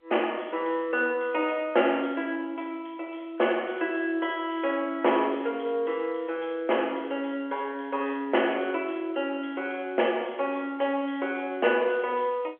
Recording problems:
telephone audio; 320 Hz to 3.3 kHz, G.711

